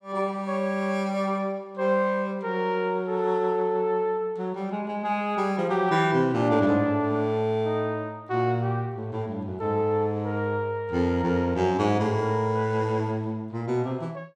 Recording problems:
none

